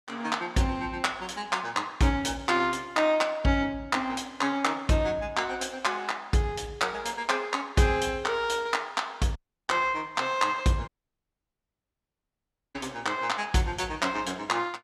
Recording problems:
dropout; at 9.5 s and at 11 s for 2 s

